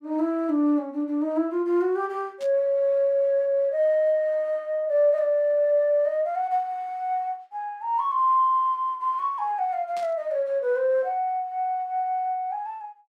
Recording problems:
burst of static; at 2.5 s and at 10 s; peak -14 dB vs average level

